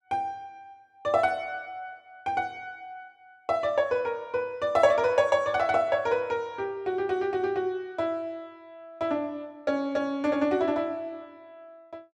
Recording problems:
none

